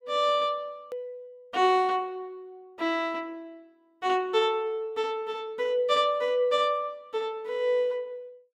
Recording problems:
click at an edit; at 1 s

